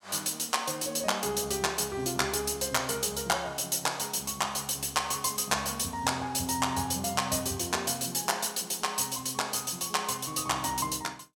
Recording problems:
none

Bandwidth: 17 kHz